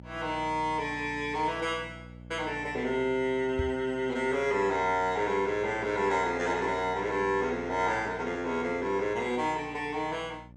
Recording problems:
hum; 60 Hz, harmonics up to 900 Hz, SNR 19 dB
microphone bump; at 3.5 s; peak 0 dB vs average level

